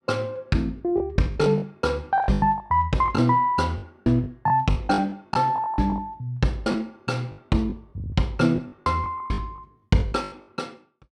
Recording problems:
lost packets; 14% of the sound replaced, filled with the last packet

